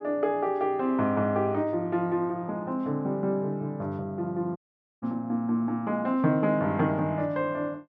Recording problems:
dropout; at 4.5 s

